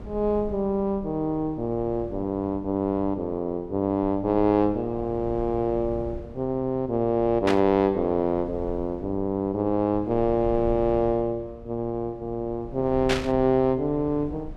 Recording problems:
rumble; below 150 Hz, SNR 17 dB
burst of static; at 7.5 s and at 13 s; peak +2 dB vs average level

